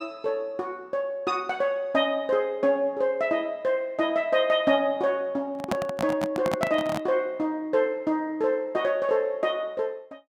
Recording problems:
handling noise; from 5.5 to 7 s; peak +2 dB vs average level

